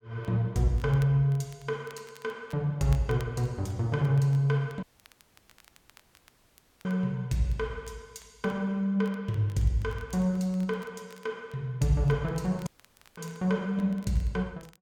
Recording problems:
crackling; vinyl, SNR 29 dB
audio cutting out; at 5 s for 2 s and at 13 s for 0.5 s

